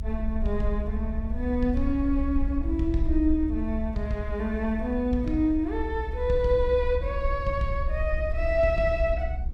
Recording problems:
low-frequency rumble; below 66 Hz, SNR 5 dB

